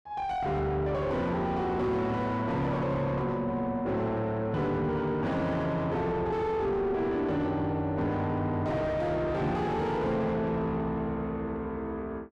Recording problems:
distorted audio; soft clipping, signal-to-distortion ratio 7 dB

